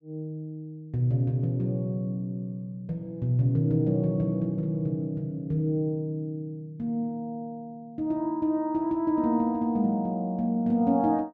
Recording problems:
none

